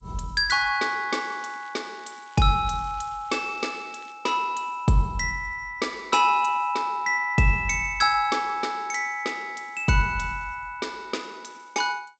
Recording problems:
lossy compression; G.722, log-spectral distance 3 dB, nothing above 7.3 kHz
crackle; from 1 to 4 s; loose cable, SNR 29 dB

